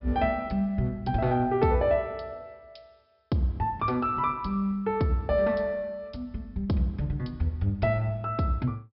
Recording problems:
low-pass filter; nothing above 5.1 kHz

